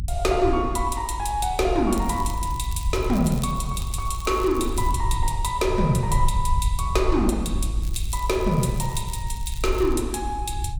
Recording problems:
rumble; below 70 Hz, SNR 5 dB
crackling; from 2 to 5 s and from 8 to 10 s; loose cable, SNR 18 dB

